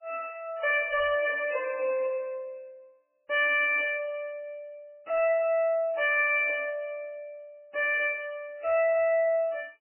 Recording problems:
lossy codec; MP3, log-spectral distance 3 dB, nothing above 2.4 kHz
distorted audio; soft clipping, signal-to-distortion ratio 9 dB

